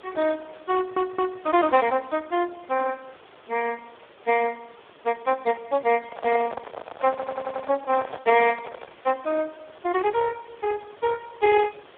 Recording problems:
phone line; 280 Hz to 2.2 kHz, Speex
background hiss; SNR 24 dB
stutter; at 1 s and at 7 s
handling noise; from 6 to 9 s; peak -2 dB vs average level

